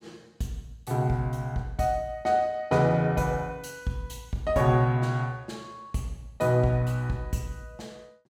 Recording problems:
none

